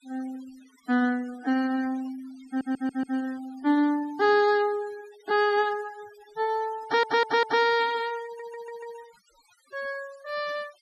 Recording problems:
noise reduction artefacts; signal-to-artefact ratio 23 dB
audio stuttering; at 2.5 s, at 7 s and at 8.5 s

